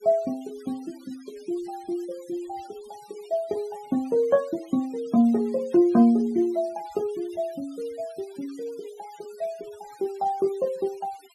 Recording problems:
noise reduction artefacts; signal-to-artefact ratio 25 dB

